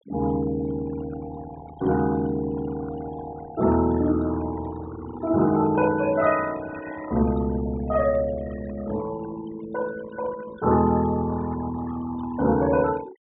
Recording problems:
treble missing; nothing above 4 kHz
noise reduction artefacts; signal-to-artefact ratio 15 dB

